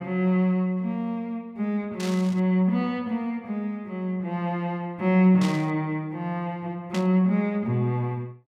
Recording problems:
static burst; at 2 s, at 5.5 s and at 7 s; peak -5 dB vs average level

